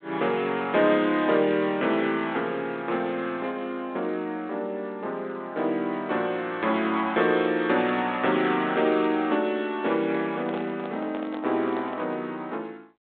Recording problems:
telephone audio; 220 Hz to 3.9 kHz, G.726
microphone handling noise; from 10 to 12 s; peak -6 dB vs average level

